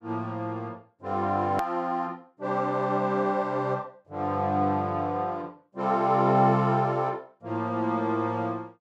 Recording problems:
hard cut with a click; at 1.5 s

